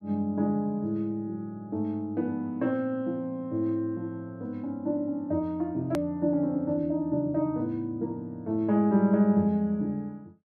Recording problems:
edit click; at 6 s

